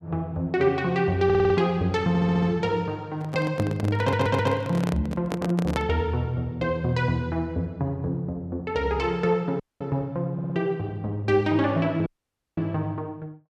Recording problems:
stutter; 4 times, first at 1.5 s
handling noise; from 3 to 6 s; peak +1 dB vs average level
audio cutting out; at 9.5 s and at 12 s for 0.5 s

